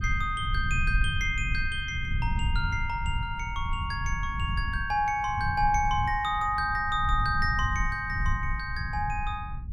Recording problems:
low-frequency rumble; below 96 Hz, SNR 4 dB

